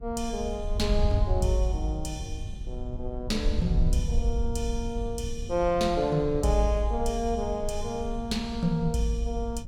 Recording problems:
rumble; below 76 Hz, SNR 10 dB
wind on the microphone; below 68 Hz, SNR 7 dB

